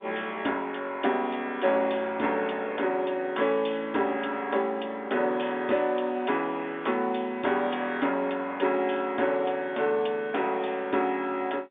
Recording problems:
telephone audio; 240 Hz to 3.6 kHz, G.711

